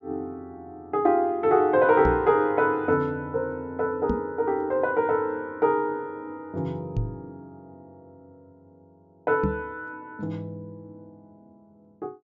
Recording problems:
treble cut off; nothing above 7.4 kHz
microphone bump; 4 times, first at 2 s; peak +2 dB vs average level

